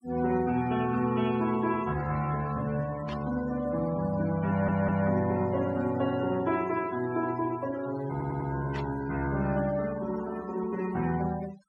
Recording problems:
noise reduction artefacts; signal-to-artefact ratio 16 dB
static burst; at 3 s and at 8.5 s; peak -10 dB vs average level
stutter; at 4.5 s and at 8 s

